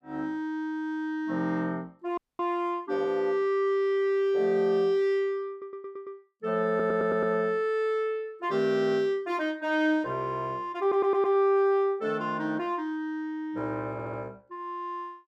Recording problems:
frozen audio; at 2 s
audio stuttering; 4 times, first at 5.5 s

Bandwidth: 14.5 kHz